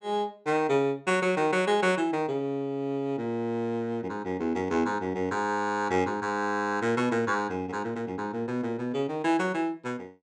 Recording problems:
none

